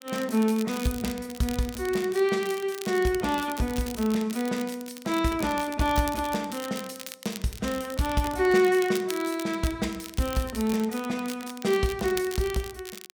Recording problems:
crackle; vinyl, SNR 14 dB

